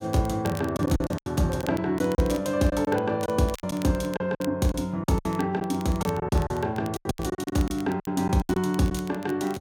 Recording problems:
crackling; vinyl, SNR 20 dB
lost packets; 12% of the sound replaced, filled with silence

